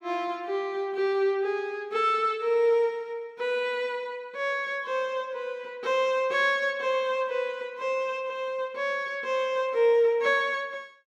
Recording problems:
none

